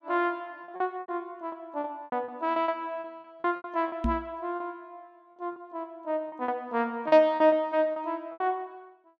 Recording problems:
packet loss; 13% of the sound replaced, filled with repeated pitch periods
microphone bump; at 4 s; peak +4 dB vs average level

